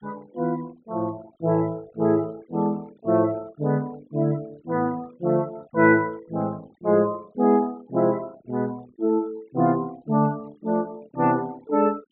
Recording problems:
treble cut off; nothing above 4 kHz
denoising artefacts; signal-to-artefact ratio 26 dB

